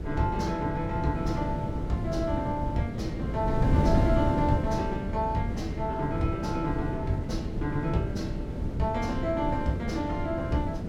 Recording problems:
wind noise; below 240 Hz, SNR 1 dB

